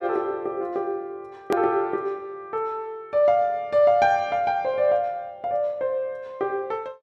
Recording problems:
edit click; at 1.5 s

